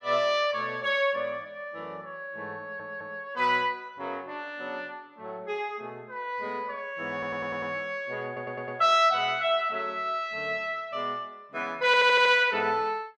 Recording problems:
audio stuttering; 4 times, first at 2.5 s

